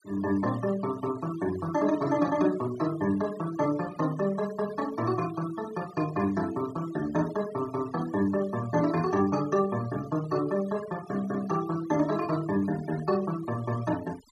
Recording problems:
noise reduction artefacts; signal-to-artefact ratio 19 dB

